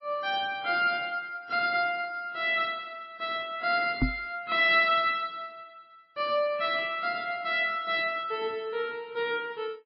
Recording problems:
codec artefacts; MP3, log-spectral distance 2 dB
microphone bump; at 4 s; peak +5 dB vs average level

